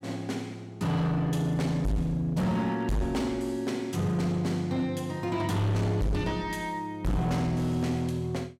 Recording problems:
distortion; hard clipping, signal-to-distortion ratio 7 dB

